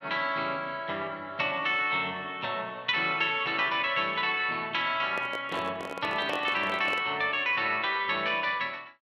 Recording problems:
microphone handling noise; from 5 to 7 s; peak -4 dB vs average level

